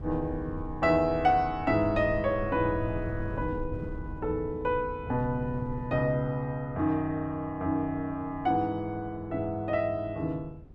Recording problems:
wind noise; below 150 Hz, SNR 13 dB

